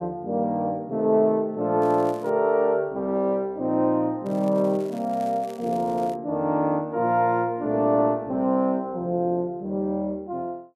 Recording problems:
crackle; at 2 s and from 4.5 to 6 s; loose cable, SNR 27 dB

